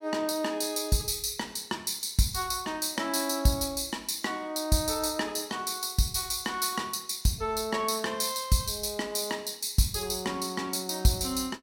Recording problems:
none

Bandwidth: 16.5 kHz